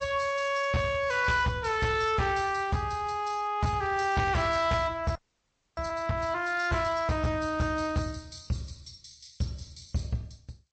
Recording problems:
codec artefacts; MP3, then G.722, log-spectral distance 5 dB, nothing above 8.2 kHz
distorted audio; hard clipping, signal-to-distortion ratio 11 dB
audio freezing; at 5 s for 0.5 s

